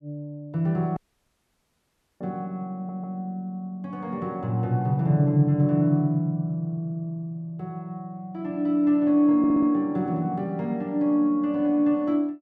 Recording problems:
audio cutting out; at 1 s for 1 s
stutter; at 2.5 s and at 9.5 s

